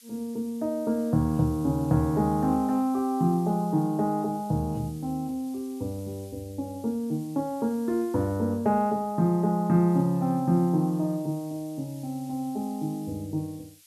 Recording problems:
background hiss; SNR 24 dB

